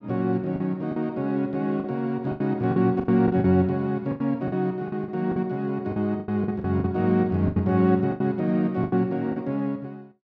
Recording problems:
packet loss; 12% of the sound replaced, filled with the last packet

